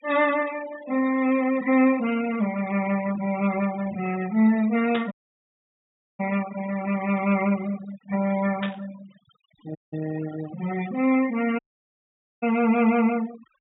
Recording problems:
treble cut off; nothing above 4 kHz
noise reduction artefacts; signal-to-artefact ratio 15 dB
burst of static; at 5 s and at 8.5 s; peak -3 dB vs average level
dropout; at 5 s for 1 s, at 10 s and at 12 s for 1 s

